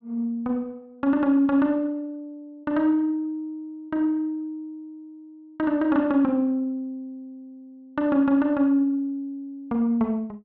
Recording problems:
none

